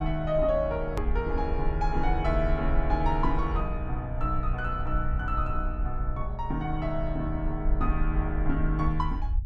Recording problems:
low-frequency rumble; below 54 Hz, SNR 3 dB
click at an edit; at 1 s

